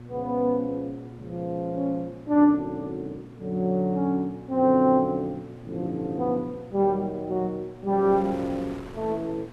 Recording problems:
hum; 60 Hz, harmonics up to 720 Hz, SNR 20 dB
wind on the microphone; below 1.2 kHz, SNR 24 dB

